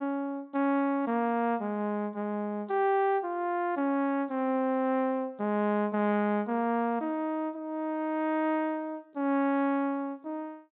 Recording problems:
treble missing; nothing above 4 kHz

